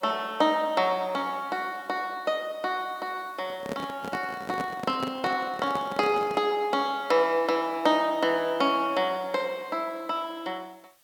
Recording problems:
hiss; slope 0 dB per octave, SNR 29 dB
handling noise; from 3.5 to 6.5 s; peak -2 dB vs average level

